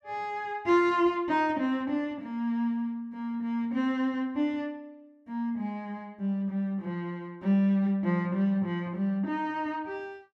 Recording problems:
none

